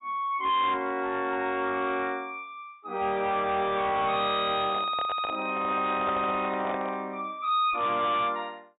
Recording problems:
low-pass filter; nothing above 4 kHz
distorted audio; hard clipping, signal-to-distortion ratio 11 dB
handling noise; from 4.5 to 7 s; peak -3 dB vs average level

